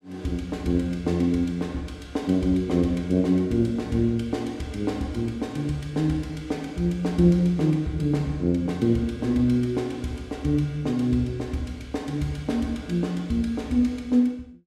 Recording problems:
none

